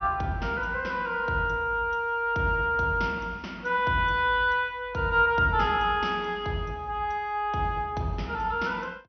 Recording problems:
treble cut off; nothing above 6.2 kHz

